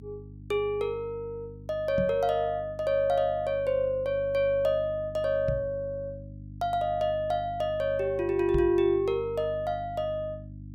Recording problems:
electrical hum; 50 Hz, harmonics up to 300 Hz, SNR 16 dB
knock on the microphone; at 2 s, at 5.5 s and at 8.5 s; peak 0 dB vs average level

